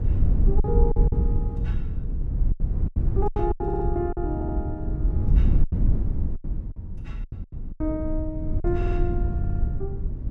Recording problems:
low-frequency rumble; below 88 Hz, SNR -5 dB
packet loss; 8% of the sound replaced, filled with silence
audio stuttering; 4 times, first at 3.5 s

